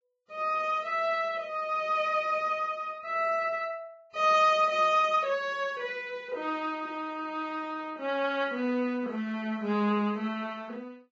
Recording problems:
lossy compression; Vorbis, log-spectral distance 2 dB, nothing above 6.2 kHz

